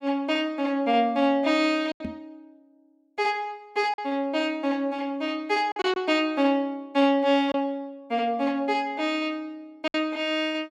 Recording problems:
lost packets; 3% of the sound replaced, filled with silence
knock on the microphone; at 2 s; peak -3 dB vs average level

